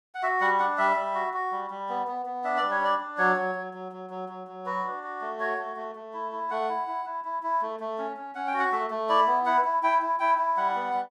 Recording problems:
none

